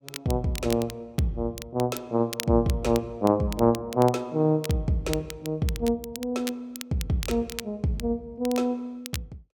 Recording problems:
crackling; vinyl, SNR 13 dB

